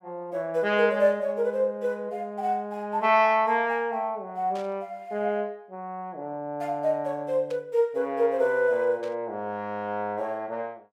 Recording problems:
static burst; at 4.5 s, at 7.5 s and at 9 s; peak -15 dB vs average level

